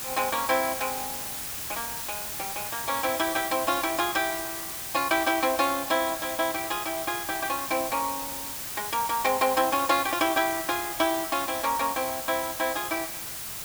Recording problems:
background hiss; slope 0 dB per octave, SNR 5 dB

